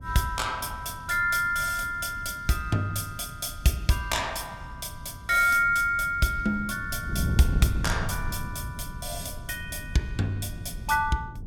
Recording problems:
wind noise; below 150 Hz, SNR 10 dB

